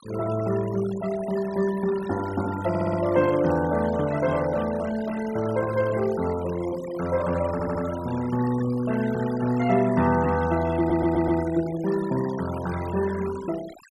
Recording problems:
denoising artefacts; signal-to-artefact ratio 15 dB
stutter; at 2.5 s, at 7.5 s and at 11 s

